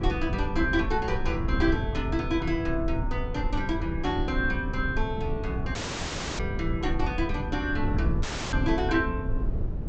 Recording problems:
treble missing; nothing above 8 kHz
low-frequency rumble; below 100 Hz, SNR 2 dB
audio cutting out; at 6 s for 0.5 s and at 8 s

